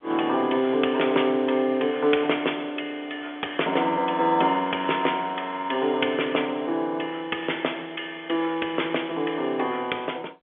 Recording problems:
phone line; 340 Hz to 3.4 kHz, G.711

